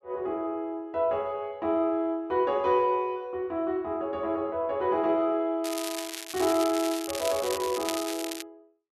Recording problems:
crackle; from 5.5 to 8.5 s; loose cable, SNR 8 dB

